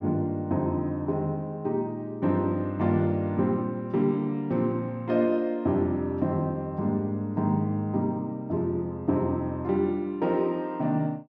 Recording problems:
none

